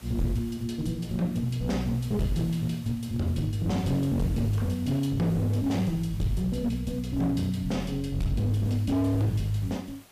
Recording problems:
distorted audio; hard clipping, signal-to-distortion ratio 10 dB
background hiss; slope -2 dB per octave, SNR 23 dB

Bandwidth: 15 kHz